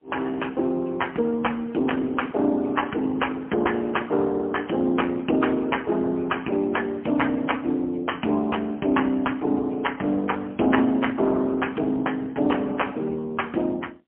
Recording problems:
phone line; 190 Hz to 3.2 kHz, AMR-NB, then MP3

